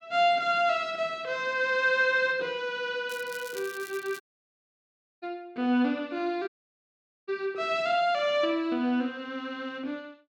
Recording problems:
crackle; from 3 to 4 s; loose cable, SNR 18 dB
audio cutting out; at 4 s for 1 s and at 6.5 s for 1 s

